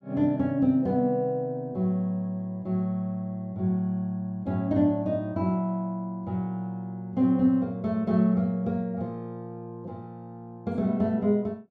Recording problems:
none

